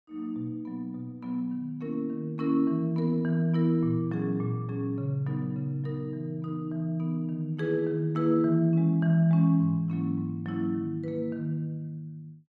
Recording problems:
none

